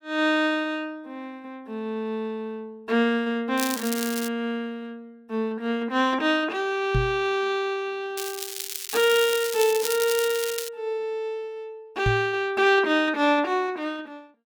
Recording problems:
crackle; at 3.5 s and from 8 to 11 s; loose cable, SNR 7 dB
microphone bump; at 7 s and at 12 s; peak +3 dB vs average level

